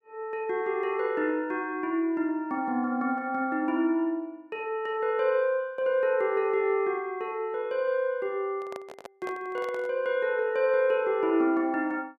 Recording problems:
handling noise; from 8.5 to 10 s; peak -8 dB vs average level

